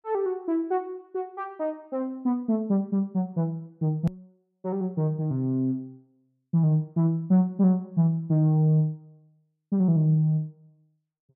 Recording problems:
edit click; at 4 s

